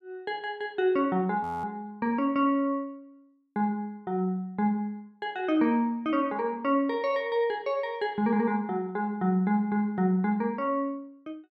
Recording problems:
audio freezing; at 1.5 s

